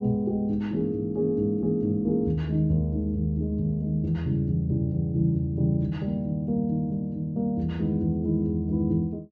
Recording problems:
treble cut off; nothing above 8 kHz

